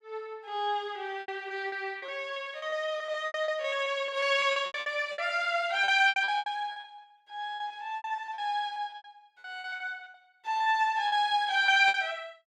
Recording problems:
lost packets; 17% of the sound replaced, filled with repeated pitch periods

